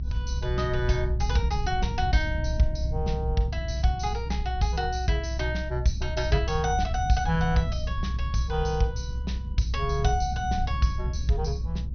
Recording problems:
treble missing; nothing above 6 kHz
low-frequency rumble; below 86 Hz, strongest tone 62 Hz, SNR 2 dB

